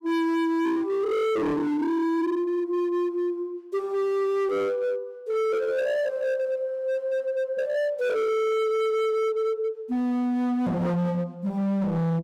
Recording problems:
distortion; hard clipping, signal-to-distortion ratio 6 dB

